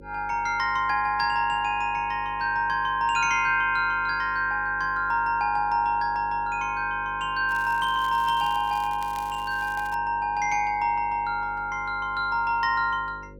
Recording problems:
hum; 50 Hz, harmonics up to 550 Hz, SNR 21 dB
crackling; from 7.5 to 10 s; loose cable, SNR 22 dB

